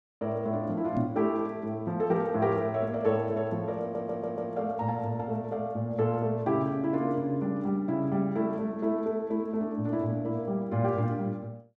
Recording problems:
knock on the microphone; at 1 s; peak +3 dB vs average level
stutter; at 4 s

